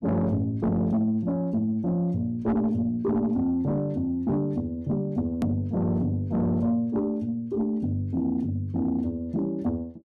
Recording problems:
distorted audio; soft clipping, signal-to-distortion ratio 11 dB
hard cut with a click; at 5.5 s

